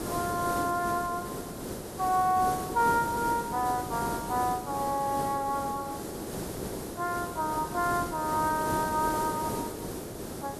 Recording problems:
hiss; SNR 6 dB

